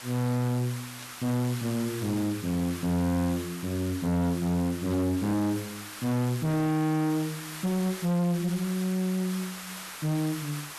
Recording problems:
distorted audio; hard clipping, uneven, signal-to-distortion ratio 5 dB
background hiss; SNR 12 dB
burst of static; at 1 s and at 5 s; peak -14 dB vs average level

